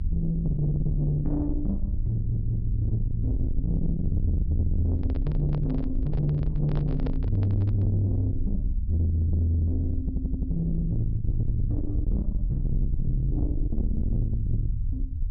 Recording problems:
treble missing; nothing above 5.5 kHz
distortion; soft clipping, signal-to-distortion ratio 8 dB
low-frequency rumble; below 86 Hz, SNR 3 dB
stutter; at 2 s and at 10 s
handling noise; from 5 to 8 s; peak -4 dB vs average level

